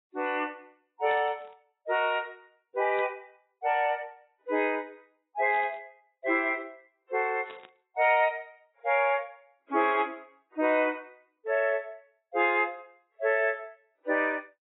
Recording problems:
lossy compression; AAC, log-spectral distance 2 dB, nothing above 3.4 kHz
burst of static; 4 times, first at 1 s; peak -12 dB vs average level

